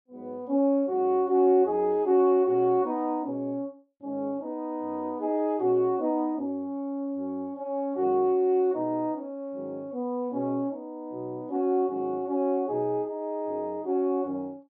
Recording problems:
none

